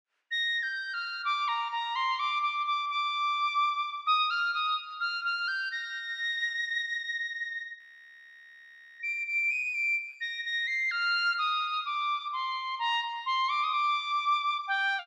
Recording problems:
audio freezing; at 8 s for 1 s

